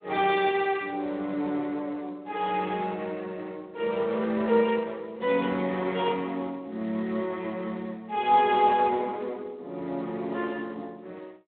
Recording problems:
phone line; 240 Hz to 3.7 kHz, Speex

